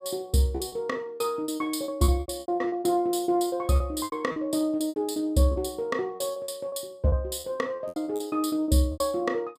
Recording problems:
packet loss; 17% of the sound replaced, filled with repeated pitch periods

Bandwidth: 15 kHz